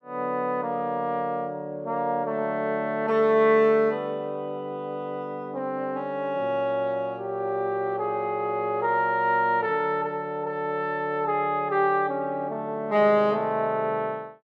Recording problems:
none

